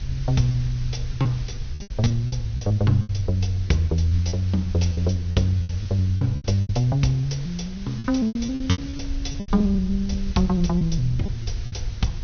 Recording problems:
low-pass filter; nothing above 6.4 kHz
hum; 60 Hz, harmonics up to 1.1 kHz, SNR 30 dB
background hiss; slope 0 dB per octave, SNR 22 dB
wind noise; below 76 Hz, SNR 11 dB
lost packets; 13% of the sound replaced, filled with repeated pitch periods

